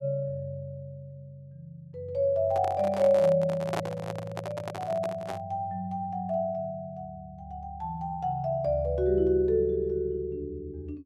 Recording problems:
microphone handling noise; from 2.5 to 5.5 s; peak +1 dB vs average level

